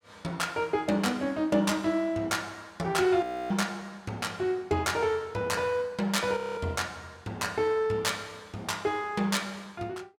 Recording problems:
audio freezing; at 3 s and at 6.5 s

